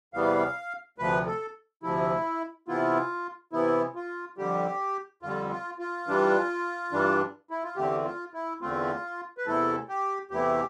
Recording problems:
none

